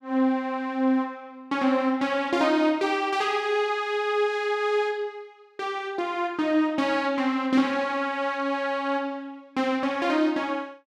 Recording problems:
none

